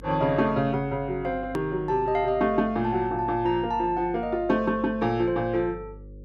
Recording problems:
electrical hum; 50 Hz, harmonics up to 550 Hz, SNR 19 dB
edit click; at 1.5 s

